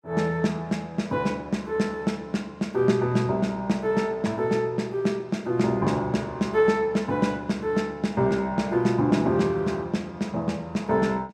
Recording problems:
none

